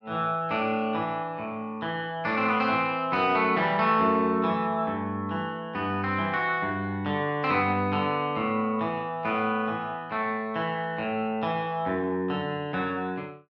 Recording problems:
none

